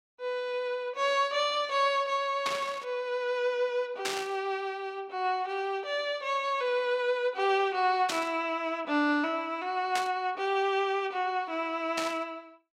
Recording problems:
static burst; 5 times, first at 2.5 s; peak +2 dB vs average level

